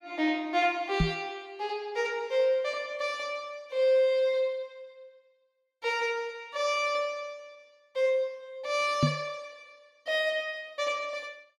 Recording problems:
microphone thump; at 1 s and at 9 s; peak +8 dB vs average level

